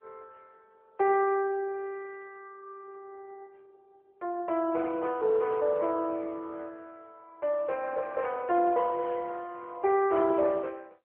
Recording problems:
phone line; 320 Hz to 3.2 kHz, AMR-NB

